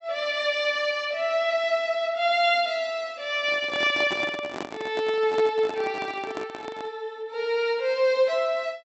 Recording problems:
treble missing; nothing above 8 kHz
microphone handling noise; from 3.5 to 7 s; peak -3 dB vs average level

